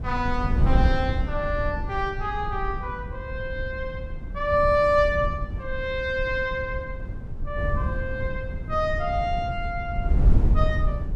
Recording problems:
wind noise; below 90 Hz, SNR 2 dB

